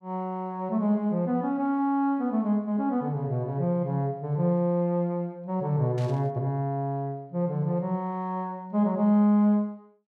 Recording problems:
burst of static; at 6 s; peak -16 dB vs average level

